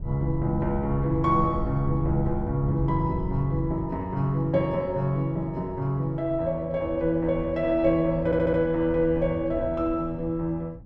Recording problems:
wind noise; below 100 Hz, SNR 11 dB
audio stuttering; at 8 s

